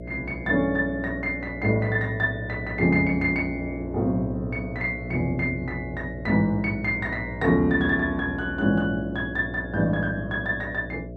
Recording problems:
hum; 60 Hz, harmonics up to 660 Hz, SNR 11 dB

